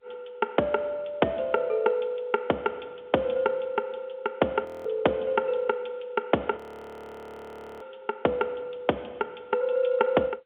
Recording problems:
telephone audio; 260 Hz to 3.5 kHz, G.711
audio freezing; at 4.5 s and at 6.5 s for 1 s

